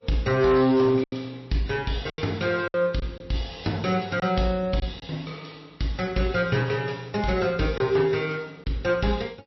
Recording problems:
codec artefacts; MP3, log-spectral distance 5 dB, nothing above 5.7 kHz
distortion; hard clipping, uneven, signal-to-distortion ratio 12 dB
lost packets; 4% of the sound replaced, filled with silence

